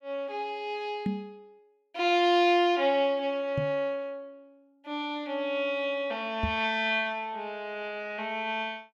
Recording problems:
microphone thump; at 1 s, at 3.5 s and at 6.5 s; peak +1 dB vs average level

